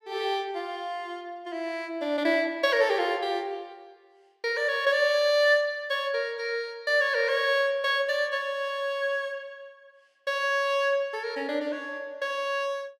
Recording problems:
none

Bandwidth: 15.5 kHz